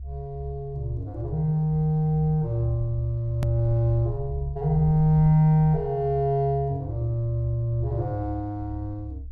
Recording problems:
rumble; below 70 Hz, strongest tone 68 Hz, SNR 12 dB
click at an edit; at 3.5 s

